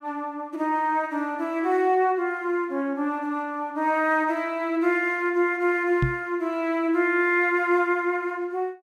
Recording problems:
knock on the microphone; at 6 s; peak +4 dB vs average level

